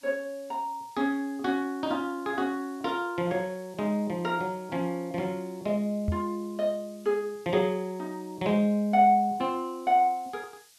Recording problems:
hiss; SNR 27 dB
microphone bump; at 6 s; peak +3 dB vs average level

